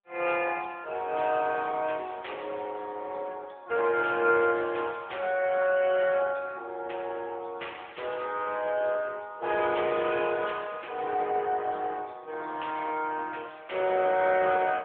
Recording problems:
phone line; 370 Hz to 3.5 kHz, AMR-NB

